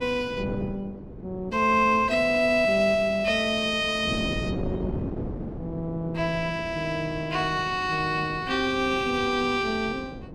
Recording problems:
wind noise; below 370 Hz, SNR 12 dB

